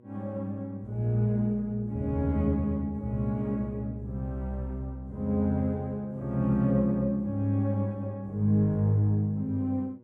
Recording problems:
mains hum; 60 Hz, harmonics up to 1.1 kHz, SNR 28 dB

